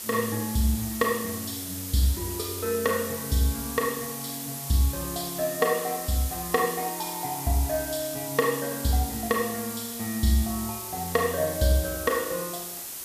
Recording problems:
hiss; SNR 6 dB

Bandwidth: 14.5 kHz